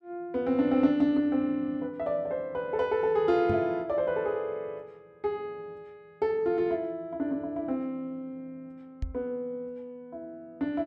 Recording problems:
microphone thump; at 3.5 s and at 9 s; peak 0 dB vs average level

